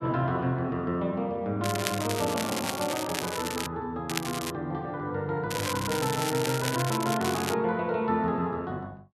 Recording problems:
crackle; from 1.5 to 3.5 s, at 4 s and from 5.5 to 7.5 s; loose cable, SNR 5 dB

